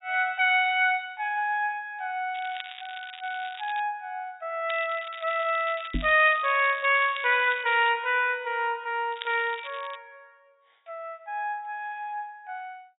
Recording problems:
treble cut off; nothing above 4 kHz
crackling; from 2.5 to 4 s, from 4.5 to 8 s and at 9 s; loose cable, SNR 17 dB
microphone thump; at 6 s; peak -1 dB vs average level

